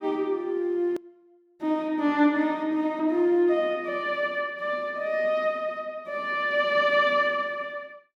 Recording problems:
edit click; at 1 s

